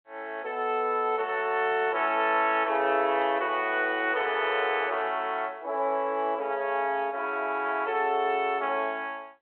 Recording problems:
phone line; 300 Hz to 3.3 kHz, G.726

